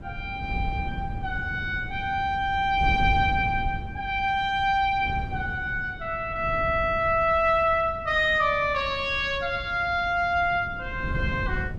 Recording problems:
wind noise; below 150 Hz, SNR 11 dB

